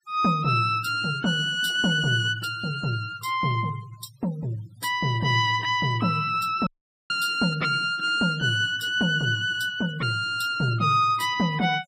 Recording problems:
noise reduction artefacts; signal-to-artefact ratio 21 dB
audio cutting out; at 6.5 s

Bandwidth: 15.5 kHz